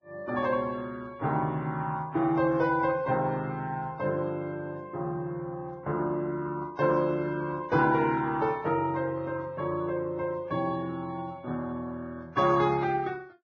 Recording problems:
lossy compression; Vorbis, log-spectral distance 2 dB, nothing above 5.8 kHz

